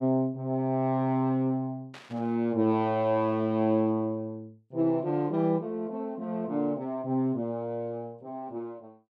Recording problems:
static burst; at 2 s; peak -13 dB vs average level

